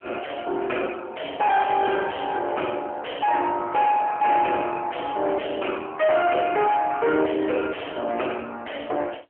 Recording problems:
telephone audio; 260 Hz to 3.2 kHz, AMR-NB
distortion; soft clipping, signal-to-distortion ratio 5 dB

